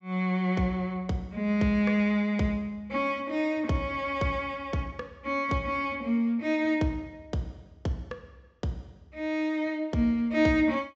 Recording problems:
treble missing; nothing above 8 kHz

